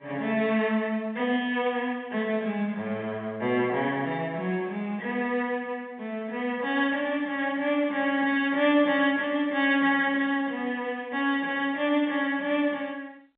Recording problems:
telephone audio; 170 Hz to 3.6 kHz, G.711

